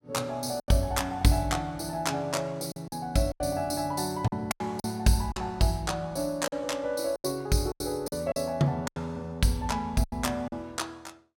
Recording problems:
packet loss; 8% of the sound replaced, filled with silence

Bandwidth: 17 kHz